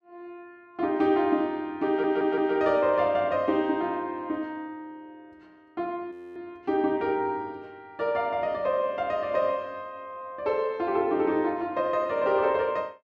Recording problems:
audio stuttering; at 2 s
frozen audio; at 6 s

